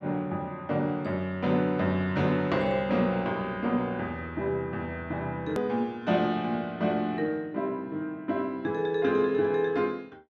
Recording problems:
click at an edit; at 5.5 s

